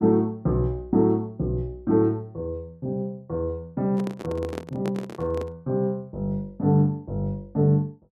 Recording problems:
microphone handling noise; from 4 to 5.5 s; peak -3 dB vs average level

